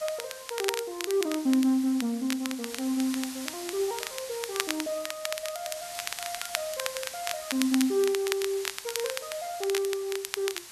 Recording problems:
hiss; slope +2 dB per octave, SNR 10 dB
crackle; vinyl, SNR 6 dB

